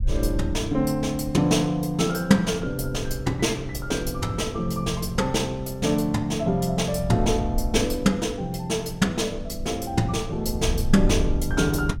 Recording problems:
rumble; below 80 Hz, SNR 9 dB

